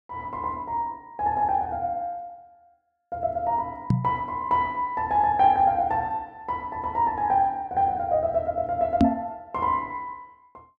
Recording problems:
microphone bump; at 4 s and at 9 s; peak +9 dB vs average level

